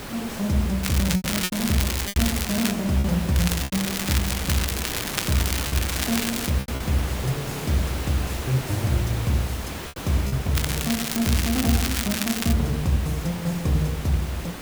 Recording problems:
hiss; slope -4 dB per octave, SNR 7 dB
packet loss; 4% of the sound replaced, filled with repeated pitch periods
crackling; from 1 to 2.5 s, from 3.5 to 6.5 s and from 11 to 13 s; loose cable, SNR 2 dB

